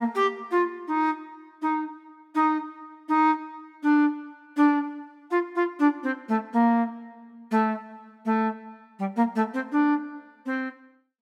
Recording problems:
none

